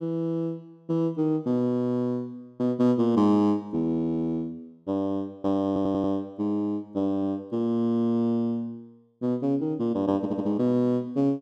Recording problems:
audio stuttering; at 5.5 s and at 10 s

